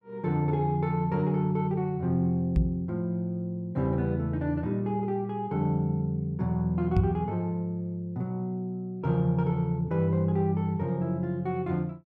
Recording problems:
microphone thump; at 2.5 s and at 7 s; peak +7 dB vs average level

